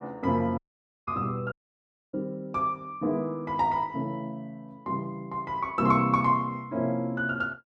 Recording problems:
dropout; at 0.5 s and at 1.5 s for 0.5 s

